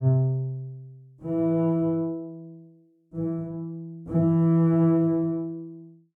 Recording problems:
none

